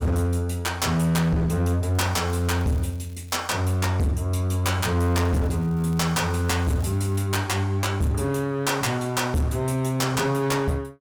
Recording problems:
distorted audio; hard clipping, signal-to-distortion ratio 8 dB
crackle; from 2 to 3.5 s and from 5 to 7 s; loose cable, SNR 29 dB

